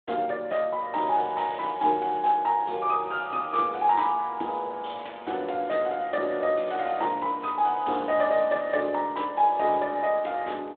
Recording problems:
telephone audio; 260 Hz to 3.6 kHz, Speex

